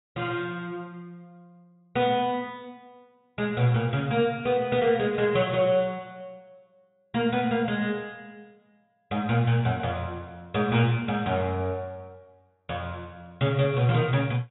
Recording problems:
low-pass filter; nothing above 4 kHz

